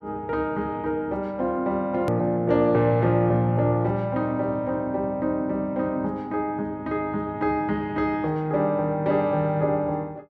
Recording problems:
hard cut with a click; at 2 s

